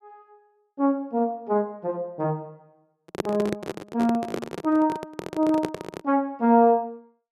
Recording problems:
microphone handling noise; from 3 to 6 s; peak +2 dB vs average level

